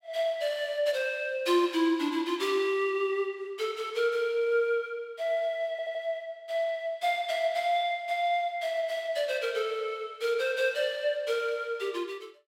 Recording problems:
audio stuttering; at 5.5 s

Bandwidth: 16 kHz